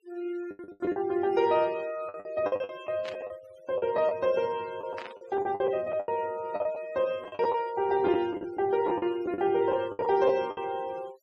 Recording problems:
noise reduction artefacts; signal-to-artefact ratio 23 dB
lost packets; 13% of the sound replaced, filled with the last packet
static burst; at 3 s and at 5 s; peak -8 dB vs average level

